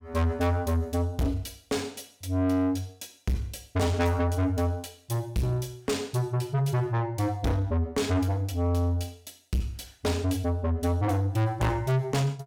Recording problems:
distortion; soft clipping, signal-to-distortion ratio 6 dB

